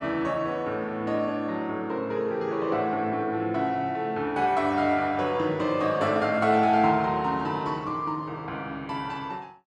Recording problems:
none

